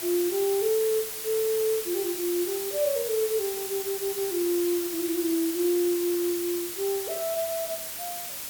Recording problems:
background hiss; slope +1 dB per octave, SNR 5 dB

